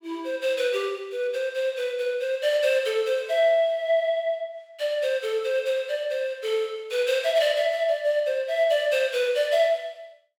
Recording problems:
none

